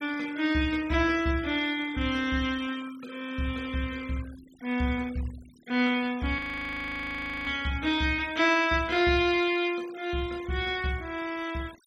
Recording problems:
noise reduction artefacts; signal-to-artefact ratio 20 dB
audio freezing; at 6.5 s for 1 s

